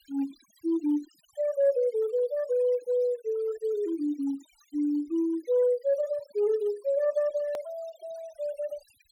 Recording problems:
noise reduction artefacts; signal-to-artefact ratio 24 dB
click at an edit; at 7.5 s

